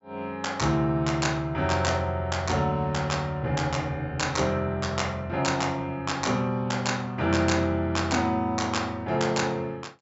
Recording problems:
low-pass filter; nothing above 8 kHz

